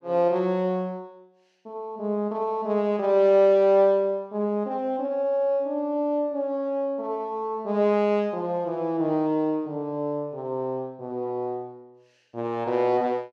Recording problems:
none

